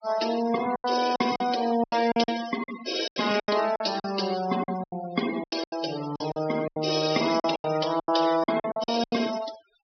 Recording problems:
treble missing; nothing above 5.5 kHz
noise reduction artefacts; signal-to-artefact ratio 12 dB
packet loss; 15% of the sound replaced, filled with silence

